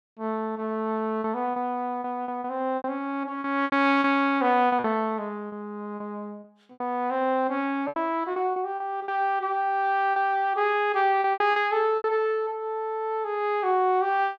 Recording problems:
lost packets; 9% of the sound replaced, filled with repeated pitch periods

